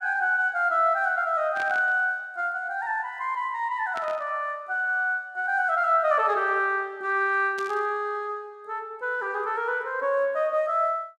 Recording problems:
burst of static; at 1.5 s, at 4 s and at 7.5 s; peak -10 dB vs average level

